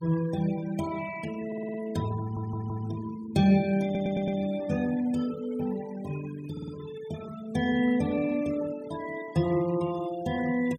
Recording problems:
denoising artefacts; signal-to-artefact ratio 16 dB
audio stuttering; 4 times, first at 1.5 s

